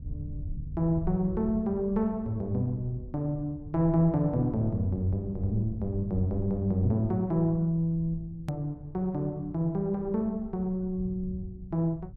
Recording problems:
low-frequency rumble; below 100 Hz, SNR 14 dB
click at an edit; at 8.5 s

